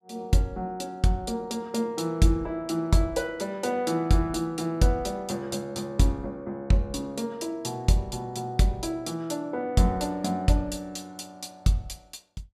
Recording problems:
none

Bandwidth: 14.5 kHz